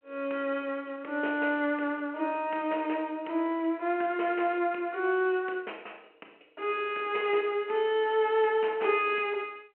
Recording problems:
phone line; 300 Hz to 3.1 kHz, G.726

